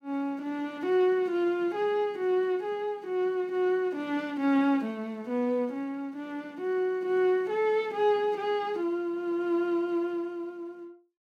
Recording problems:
none

